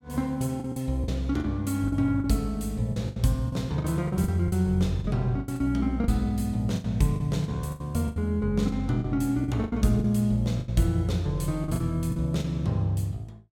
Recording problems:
packet loss; 12% of the sound replaced, filled with the last packet

